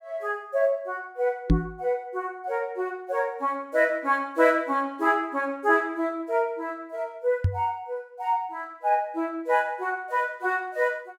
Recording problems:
microphone bump; at 1.5 s and at 7.5 s; peak +9 dB vs average level

